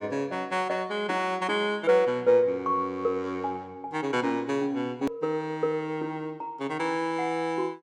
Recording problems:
hard cut with a click; at 5 s

